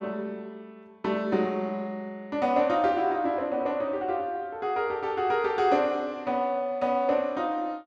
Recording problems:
none

